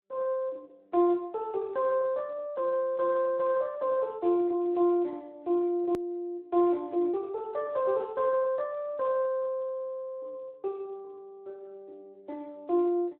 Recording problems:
phone line; 300 Hz to 2 kHz, Speex
hard cut with a click; at 6 s

